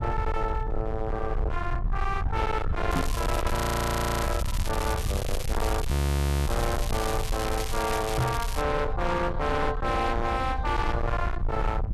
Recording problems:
distorted audio; hard clipping, signal-to-distortion ratio 8 dB
low-frequency rumble; below 110 Hz, SNR 2 dB
crackle; from 3 to 8.5 s; loose cable, SNR 7 dB
microphone thump; at 3 s and at 8 s; peak +6 dB vs average level
frozen audio; at 3.5 s for 0.5 s and at 6 s for 0.5 s

